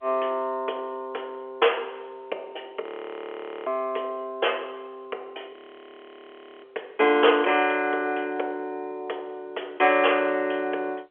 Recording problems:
phone line; 320 Hz to 3.4 kHz, G.711
frozen audio; at 3 s for 1 s and at 5.5 s for 1 s

